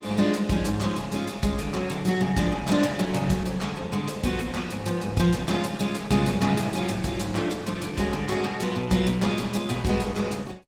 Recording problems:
lossy codec; Opus, log-spectral distance 5 dB

